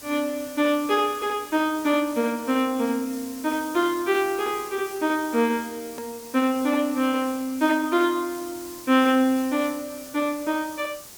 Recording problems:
hiss; SNR 16 dB
hard cut with a click; at 6 s

